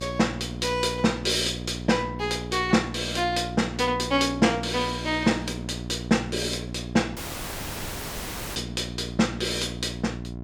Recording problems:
electrical hum; 60 Hz, harmonics up to 1 kHz, SNR 10 dB
dropout; at 7 s for 1.5 s

